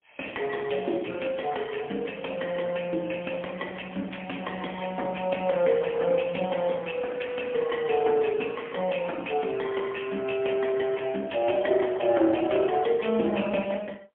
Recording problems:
phone line; 220 Hz to 3.4 kHz, AMR-NB, then MP3

